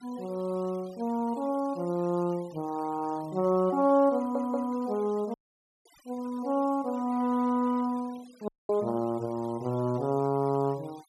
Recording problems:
noise reduction artefacts; signal-to-artefact ratio 25 dB
audio stuttering; at 4 s
dropout; at 5.5 s for 0.5 s and at 8.5 s

